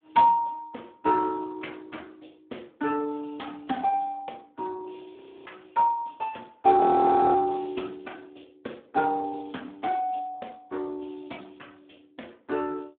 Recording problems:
telephone audio; 220 Hz to 3.6 kHz, Speex
audio freezing; at 5 s and at 7 s for 0.5 s

